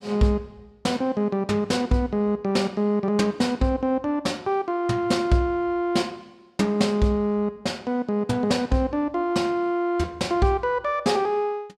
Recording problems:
none

